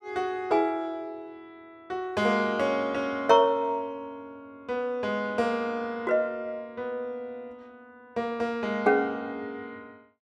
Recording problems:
none

